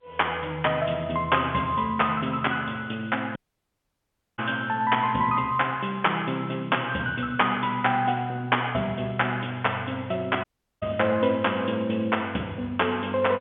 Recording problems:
phone line; 150 Hz to 3.5 kHz, G.711
dropout; at 3.5 s for 1 s and at 10 s

